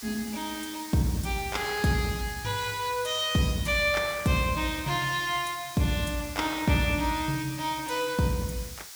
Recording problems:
background hiss; slope +3 dB per octave, SNR 12 dB

